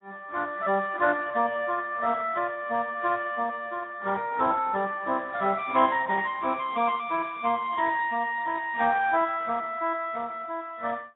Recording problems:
codec artefacts; Speex, then AAC, log-spectral distance 4 dB, nothing above 3.6 kHz

